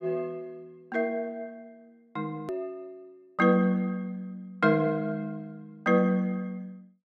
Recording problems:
edit click; at 2.5 s

